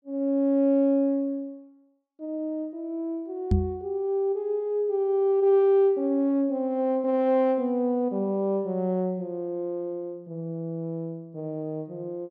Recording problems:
knock on the microphone; at 3.5 s; peak +6 dB vs average level

